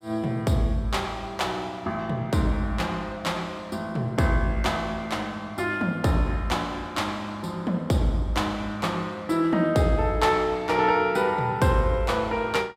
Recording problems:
none

